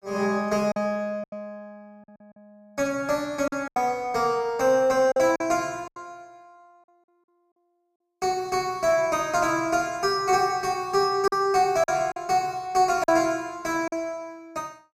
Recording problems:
lost packets; 5% of the sound replaced, filled with silence

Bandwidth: 15 kHz